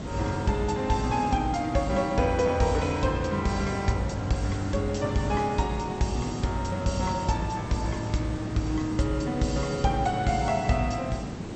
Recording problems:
lossy codec; MP2, log-spectral distance 3 dB, nothing above 8 kHz
hiss; slope -7 dB per octave, SNR 9 dB

